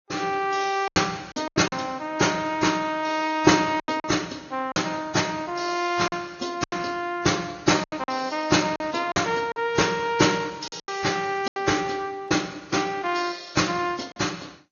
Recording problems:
lossy compression; MP2, then AAC, log-spectral distance 5 dB, nothing above 6.7 kHz
lost packets; 7% of the sound replaced, filled with silence

